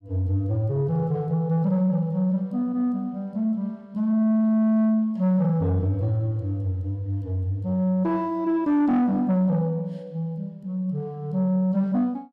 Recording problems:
distortion; soft clipping, signal-to-distortion ratio 12 dB

